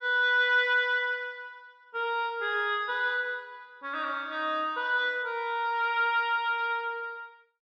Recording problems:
none

